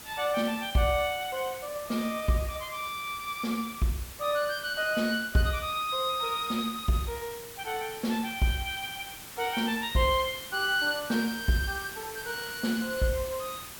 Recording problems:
background hiss; slope -1 dB per octave, SNR 12 dB

